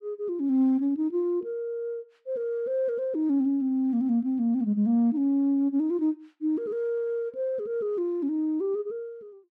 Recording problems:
none

